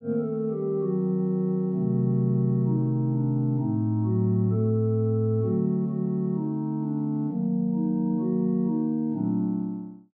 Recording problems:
none

